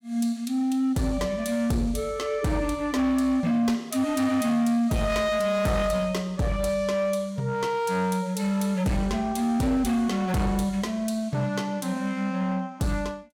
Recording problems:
distorted audio; hard clipping, signal-to-distortion ratio 11 dB

